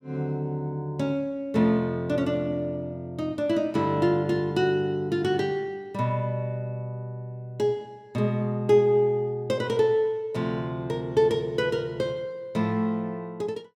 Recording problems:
none

